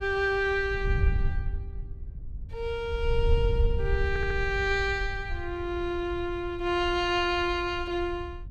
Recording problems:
wind noise; below 78 Hz, SNR 5 dB
audio stuttering; at 4 s

